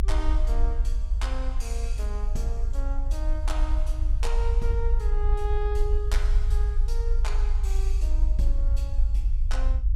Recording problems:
rumble; below 52 Hz, strongest tone 26 Hz, SNR -10 dB

